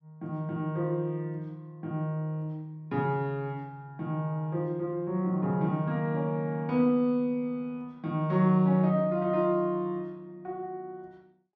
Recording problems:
none

